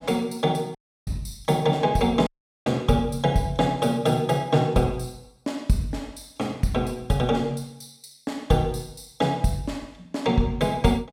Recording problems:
audio cutting out; at 1 s and at 2.5 s

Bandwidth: 16 kHz